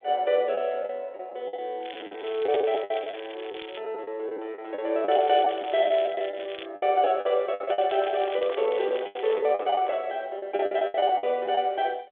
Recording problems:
phone line; 340 Hz to 3.5 kHz, G.726
packet loss; 13% of the sound replaced, filled with the last packet
crackle; from 2 to 4 s, from 5 to 6.5 s and from 7.5 to 9.5 s; loose cable, SNR 17 dB
microphone handling noise; from 8 to 10 s; peak -10 dB vs average level

